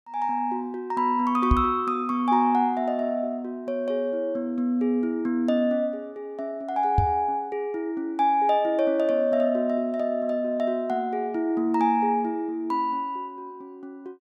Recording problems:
microphone bump; at 1.5 s and at 7 s; peak +6 dB vs average level

